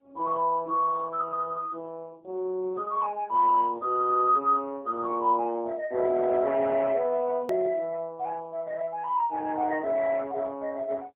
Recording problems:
telephone audio; 240 Hz to 3 kHz, AMR-NB, then MP3
click at an edit; at 7.5 s

